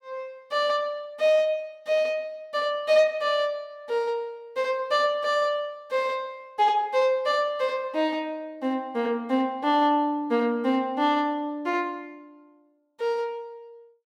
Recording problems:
none

